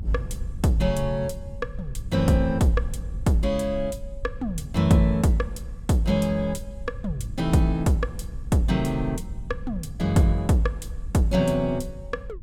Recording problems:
rumble; below 78 Hz, SNR 12 dB

